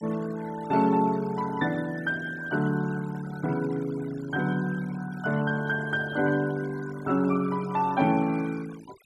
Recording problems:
noise reduction artefacts; signal-to-artefact ratio 20 dB

